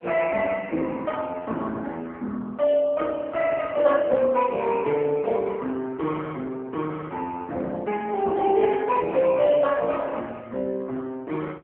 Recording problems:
telephone audio; 150 Hz to 3.1 kHz, AMR-NB

